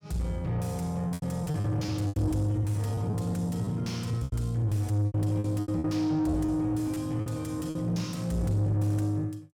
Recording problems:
distortion; soft clipping, signal-to-distortion ratio 10 dB
lost packets; 10% of the sound replaced, filled with repeated pitch periods

